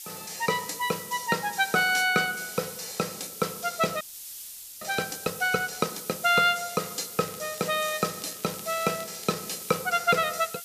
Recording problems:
background hiss; slope +6 dB per octave, SNR 11 dB
audio freezing; at 4 s for 1 s
crackling; from 7 to 10 s; loose cable, SNR 20 dB

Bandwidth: 14.5 kHz